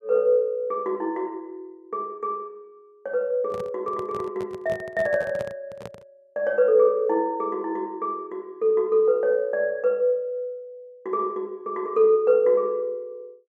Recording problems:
microphone handling noise; from 3.5 to 6 s; peak -8 dB vs average level

